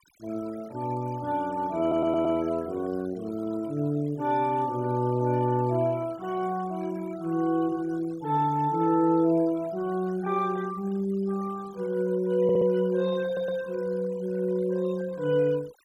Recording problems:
denoising artefacts; signal-to-artefact ratio 23 dB
audio stuttering; at 2 s, at 12 s and at 13 s

